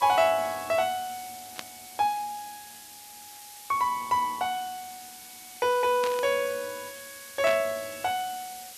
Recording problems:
hiss; slope +3 dB per octave, SNR 15 dB
burst of static; at 1.5 s, at 6 s and at 7.5 s; peak -2 dB vs average level

